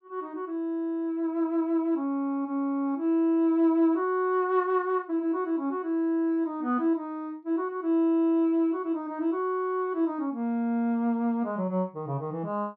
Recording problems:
none

